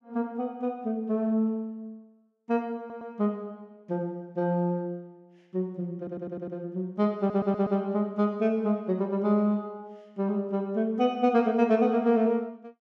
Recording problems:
stutter; at 3 s, at 6 s and at 7 s

